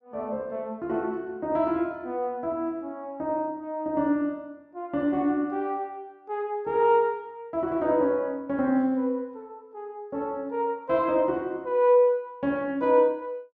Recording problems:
none

